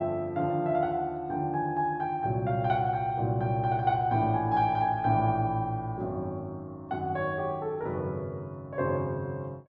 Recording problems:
low-pass filter; nothing above 8 kHz

